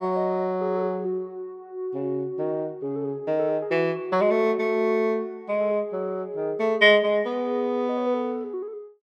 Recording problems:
none

